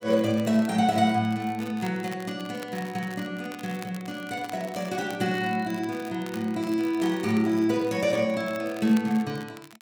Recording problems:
crackle; vinyl, SNR 20 dB

